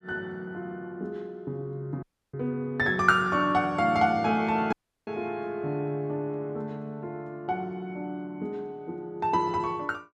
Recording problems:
audio cutting out; at 2 s and at 4.5 s

